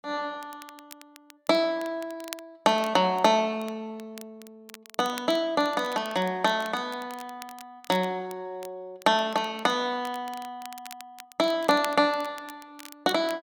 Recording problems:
crackle; vinyl, SNR 20 dB

